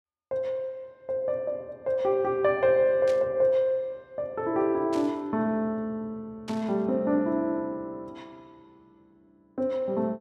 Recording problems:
static burst; at 3 s, at 5 s and at 6.5 s; peak -10 dB vs average level

